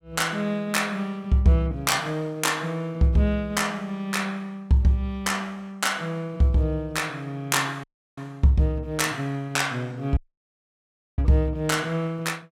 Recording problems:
dropout; at 8 s and at 10 s for 1 s

